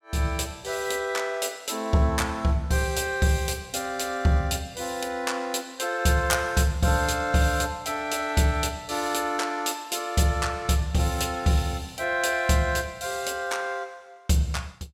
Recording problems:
none

